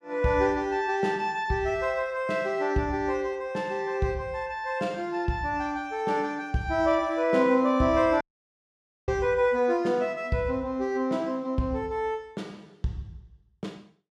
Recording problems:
dropout; at 8 s for 1 s

